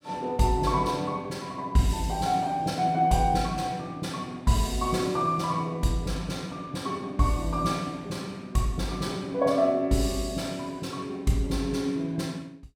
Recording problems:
none

